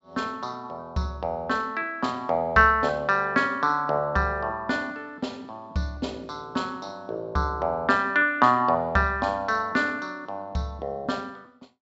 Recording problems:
treble missing; nothing above 7.5 kHz

